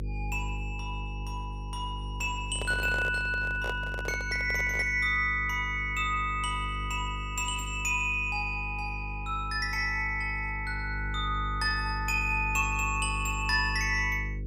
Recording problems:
hum; 50 Hz, harmonics up to 500 Hz, SNR 8 dB
handling noise; from 2.5 to 5 s; peak -4 dB vs average level

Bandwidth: 15.5 kHz